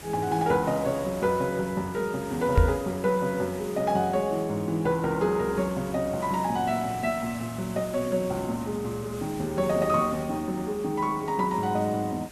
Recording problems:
hiss; slope -3 dB per octave, SNR 17 dB
microphone bump; at 2.5 s; peak +9 dB vs average level

